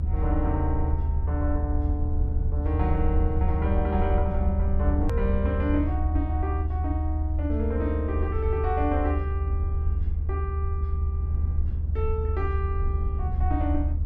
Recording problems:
low-frequency rumble; below 78 Hz, strongest tone 76 Hz, SNR -4 dB
edit click; at 5 s

